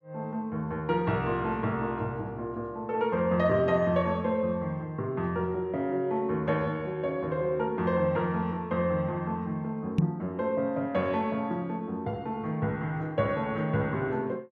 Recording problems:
microphone bump; at 10 s; peak +9 dB vs average level

